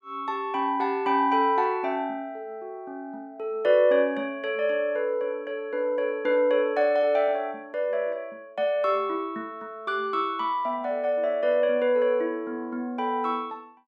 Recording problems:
none

